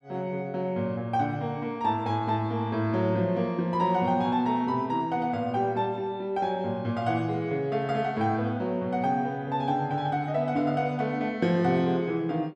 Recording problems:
none

